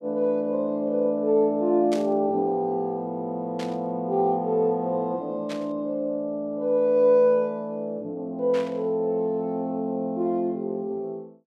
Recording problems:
static burst; 4 times, first at 2 s; peak -8 dB vs average level

